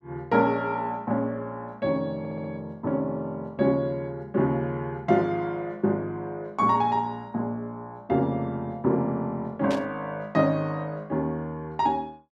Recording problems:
stutter; at 2 s
static burst; at 9.5 s; peak -6 dB vs average level

